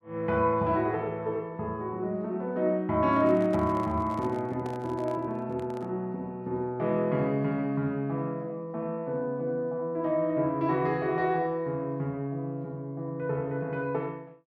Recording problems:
handling noise; from 3 to 6 s; peak -8 dB vs average level

